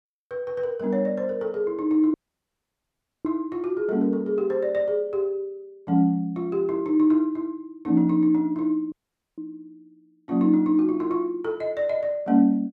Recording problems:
dropout; at 2 s for 1 s and at 9 s

